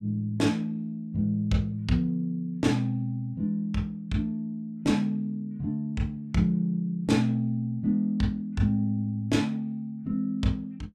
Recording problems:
none

